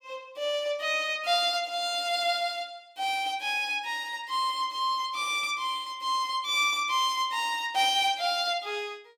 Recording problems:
none

